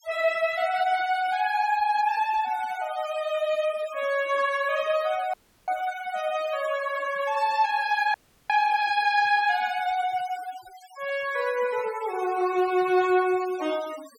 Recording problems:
noise reduction artefacts; signal-to-artefact ratio 18 dB
audio cutting out; at 5.5 s and at 8 s

